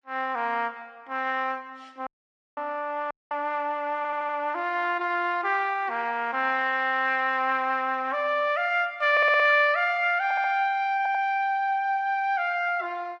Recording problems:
codec artefacts; Vorbis, log-spectral distance 2 dB
dropout; at 2 s for 0.5 s and at 3 s
stutter; 4 times, first at 4 s

